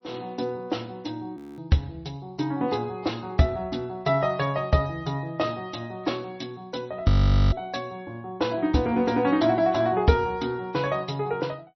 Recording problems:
codec artefacts; MP3, log-spectral distance 3 dB, nothing above 5.8 kHz
audio freezing; at 1.5 s and at 7 s

